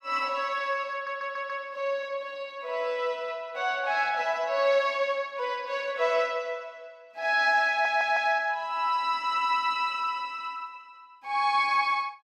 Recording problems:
audio stuttering; at 1 s and at 7.5 s

